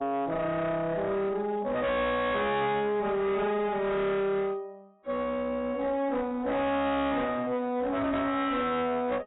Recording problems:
lossy compression; AAC, log-spectral distance 2 dB, nothing above 3.8 kHz
distortion; hard clipping, uneven, signal-to-distortion ratio 7 dB

